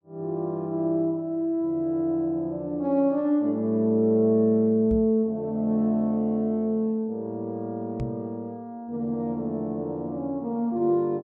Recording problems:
knock on the microphone; at 5 s and at 8 s; peak -3 dB vs average level

